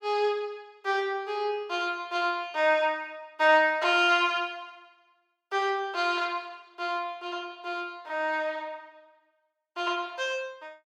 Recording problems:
none

